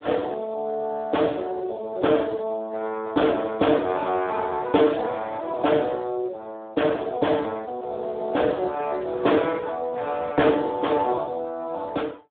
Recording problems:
phone line; 260 Hz to 3.6 kHz, Speex

